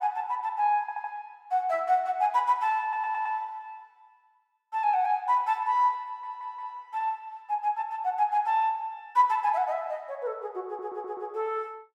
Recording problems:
audio stuttering; 4 times, first at 1 s

